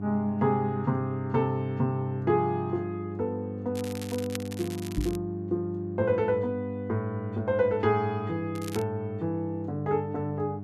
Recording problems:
electrical hum; 50 Hz, harmonics up to 800 Hz, SNR 8 dB
crackling; from 4 to 5 s and at 8.5 s; loose cable, SNR 14 dB
microphone bump; at 5 s; peak +3 dB vs average level

